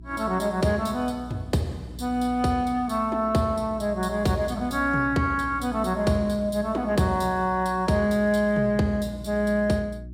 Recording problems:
electrical hum; 60 Hz, harmonics up to 360 Hz, SNR 16 dB

